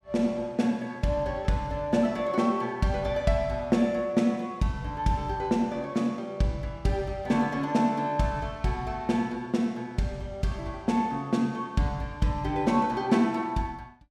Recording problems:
none

